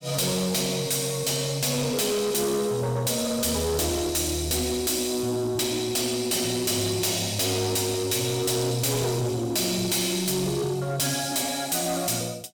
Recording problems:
distorted audio; soft clipping, signal-to-distortion ratio 6 dB

